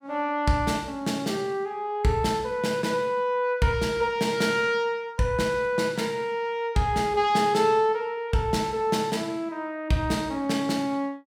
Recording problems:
none

